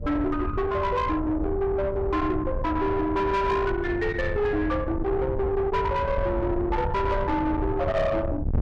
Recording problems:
distortion; soft clipping, signal-to-distortion ratio 7 dB
wind on the microphone; below 390 Hz, SNR 6 dB

